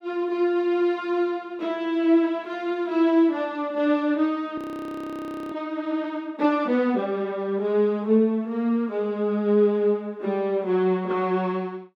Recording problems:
audio freezing; at 4.5 s for 1 s

